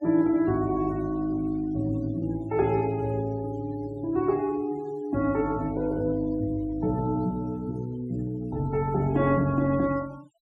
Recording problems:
noise reduction artefacts; signal-to-artefact ratio 25 dB

